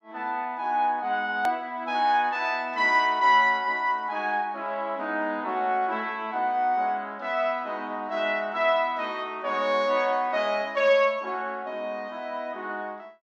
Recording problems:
hard cut with a click; at 1.5 s

